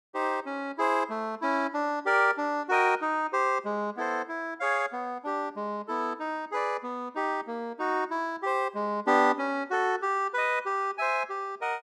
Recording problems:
none

